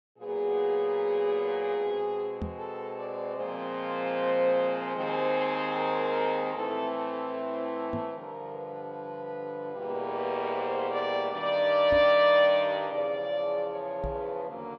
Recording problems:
microphone bump; 4 times, first at 2.5 s; peak -2 dB vs average level

